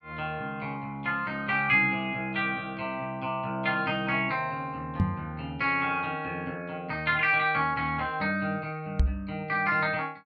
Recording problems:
knock on the microphone; at 5 s and at 9 s; peak +7 dB vs average level

